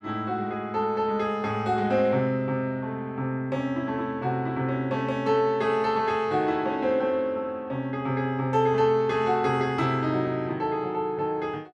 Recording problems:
none

